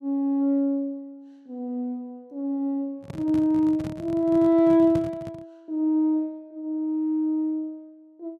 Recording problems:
handling noise; from 3 to 5.5 s; peak -3 dB vs average level

